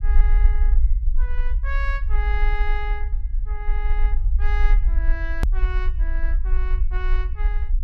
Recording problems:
rumble; below 46 Hz, strongest tone 24 Hz, SNR -11 dB
click at an edit; at 5.5 s

